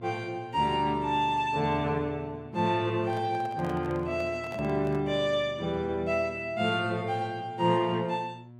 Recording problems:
electrical hum; 60 Hz, harmonics up to 960 Hz, SNR 20 dB
handling noise; from 3 to 5 s; peak -9 dB vs average level

